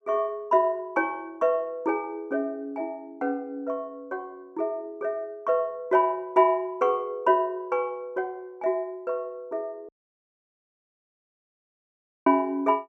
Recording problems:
dropout; at 10 s for 2.5 s

